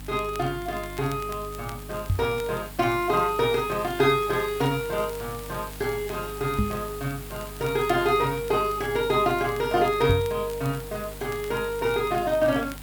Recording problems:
hum; 50 Hz, harmonics up to 300 Hz, SNR 17 dB
hiss; slope -2 dB per octave, SNR 16 dB
crackle; vinyl, SNR 23 dB
knock on the microphone; at 2 s, at 6.5 s and at 10 s; peak +5 dB vs average level

